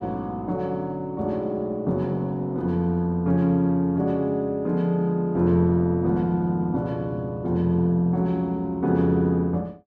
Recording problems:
none

